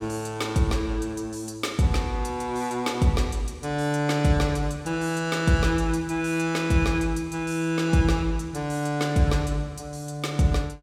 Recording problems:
none

